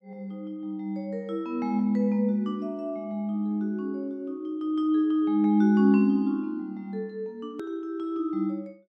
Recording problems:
edit click; at 7.5 s

